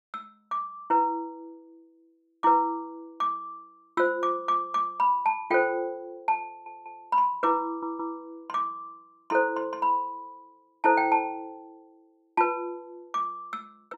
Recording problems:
audio stuttering; at 6.5 s and at 7.5 s

